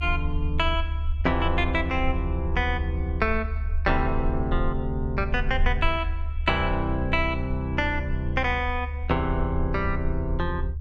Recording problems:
low-frequency rumble; below 74 Hz, SNR 3 dB

